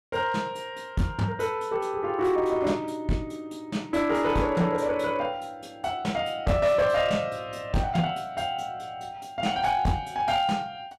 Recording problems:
distorted audio; hard clipping, uneven, signal-to-distortion ratio 11 dB

